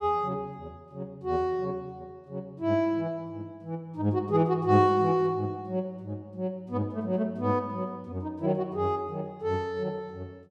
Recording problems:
none

